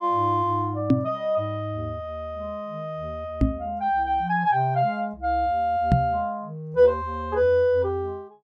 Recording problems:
microphone thump; at 1 s, at 3.5 s and at 6 s; peak +9 dB vs average level

